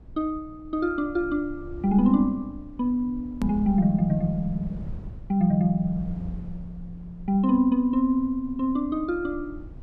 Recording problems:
low-frequency rumble; below 100 Hz, SNR 17 dB
click at an edit; at 3.5 s

